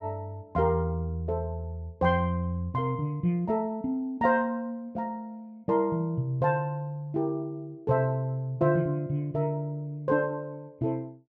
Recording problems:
none

